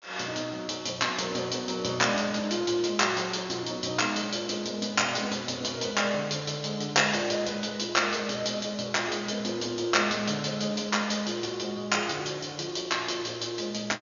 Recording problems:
treble missing; nothing above 7 kHz

